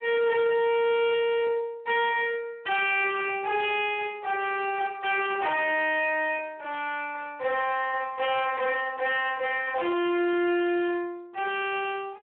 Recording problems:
phone line; 300 Hz to 3.3 kHz, Speex
distorted audio; hard clipping, uneven, signal-to-distortion ratio 7 dB

